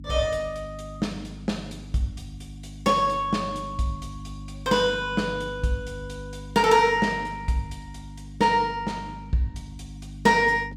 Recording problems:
hum; 50 Hz, harmonics up to 300 Hz, SNR 15 dB

